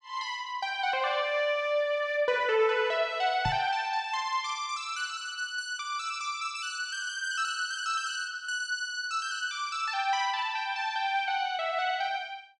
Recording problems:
knock on the microphone; at 3.5 s; peak -1 dB vs average level

